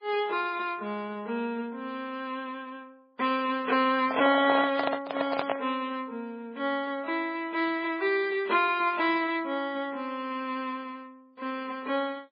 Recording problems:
lossy compression; MP3, then MP3, log-spectral distance 2 dB
handling noise; from 4 to 5.5 s; peak +4 dB vs average level

